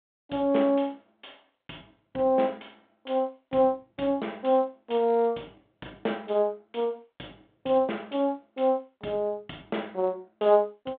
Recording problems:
phone line; 190 Hz to 3.5 kHz, G.726

